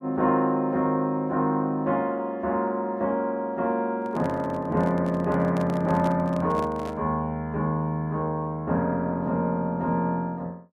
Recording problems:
microphone handling noise; from 4 to 7 s; peak -6 dB vs average level

